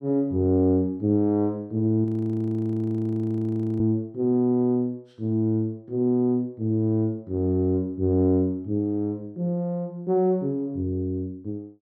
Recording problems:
frozen audio; at 2 s for 2 s

